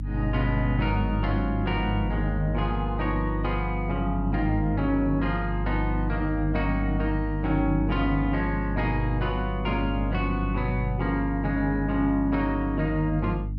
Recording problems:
hum; 50 Hz, harmonics up to 300 Hz, SNR 3 dB

